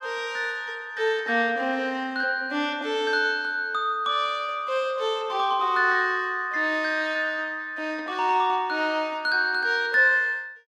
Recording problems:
none

